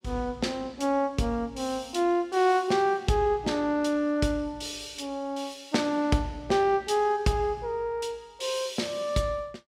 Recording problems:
none

